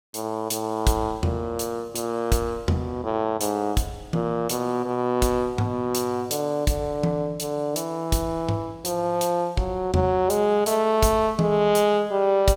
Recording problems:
none

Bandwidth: 16.5 kHz